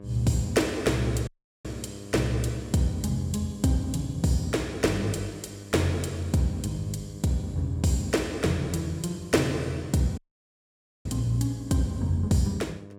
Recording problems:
electrical hum; 50 Hz, harmonics up to 1.2 kHz, SNR 17 dB
audio cutting out; at 1.5 s and at 10 s for 1 s

